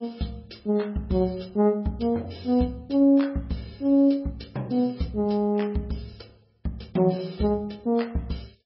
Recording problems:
lossy codec; MP3, log-spectral distance 3 dB, nothing above 5.3 kHz

